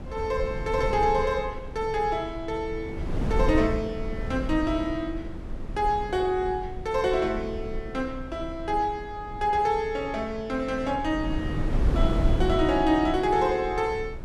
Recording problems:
wind on the microphone; below 150 Hz, SNR 7 dB

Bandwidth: 12.5 kHz